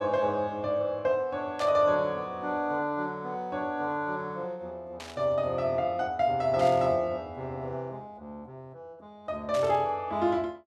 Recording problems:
burst of static; 4 times, first at 1.5 s; peak -8 dB vs average level

